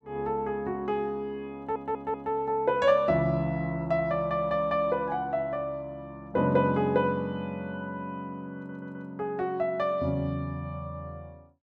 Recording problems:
audio stuttering; at 1.5 s and at 8.5 s

